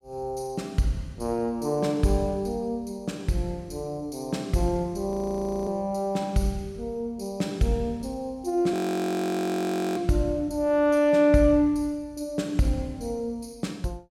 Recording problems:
frozen audio; at 5 s for 0.5 s and at 8.5 s for 1 s

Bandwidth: 16.5 kHz